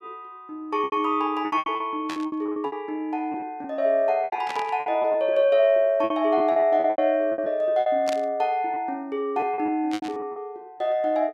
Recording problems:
lost packets; 13% of the sound replaced, filled with repeated pitch periods
burst of static; 4 times, first at 2 s; peak -5 dB vs average level

